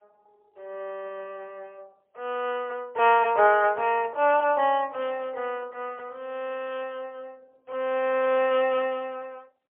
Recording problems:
phone line; 320 Hz to 3.2 kHz, AMR-NB, then MP3

